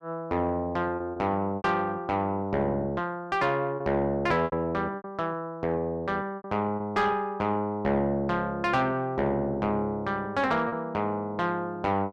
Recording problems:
distorted audio; soft clipping, signal-to-distortion ratio 11 dB
lost packets; 4% of the sound replaced, filled with repeated pitch periods

